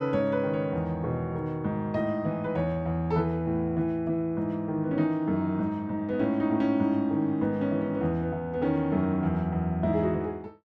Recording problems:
none

